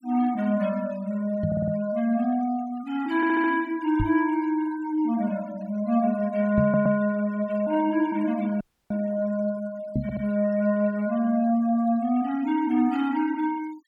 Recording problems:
denoising artefacts; signal-to-artefact ratio 24 dB
microphone bump; 4 times, first at 1.5 s; peak +2 dB vs average level
audio stuttering; 4 times, first at 1.5 s
audio cutting out; at 8.5 s

